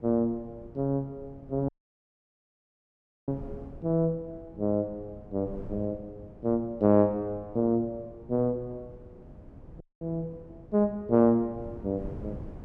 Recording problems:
wind on the microphone; below 250 Hz, SNR 18 dB
audio cutting out; at 1.5 s for 1.5 s and at 10 s

